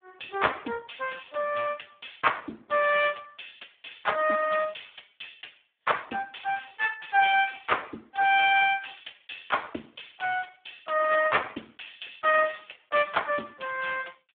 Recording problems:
telephone audio; 220 Hz to 3.6 kHz, Speex

